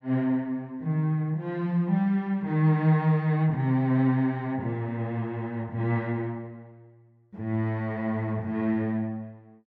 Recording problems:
none

